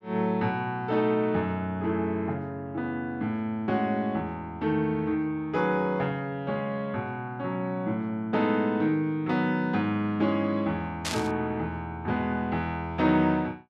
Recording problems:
static burst; at 11 s; peak +1 dB vs average level

